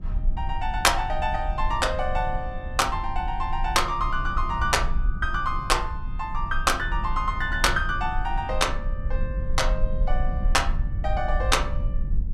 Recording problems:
low-frequency rumble; below 56 Hz, SNR 5 dB

